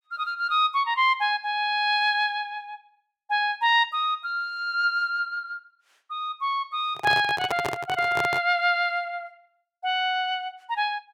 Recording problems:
handling noise; from 7 to 8.5 s; peak -1 dB vs average level

